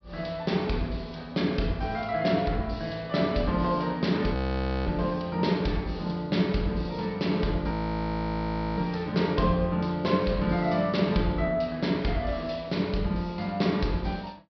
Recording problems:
treble cut off; nothing above 5.5 kHz
frozen audio; at 4.5 s for 0.5 s and at 7.5 s for 1 s

